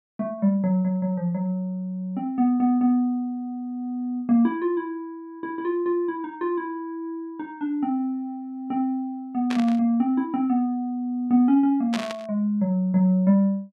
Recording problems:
static burst; at 9.5 s and at 12 s; peak -3 dB vs average level

